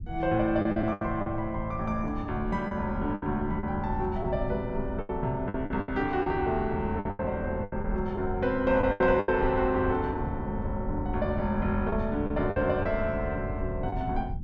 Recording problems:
rumble; below 110 Hz, SNR 9 dB
packet loss; 8% of the sound replaced, filled with the last packet

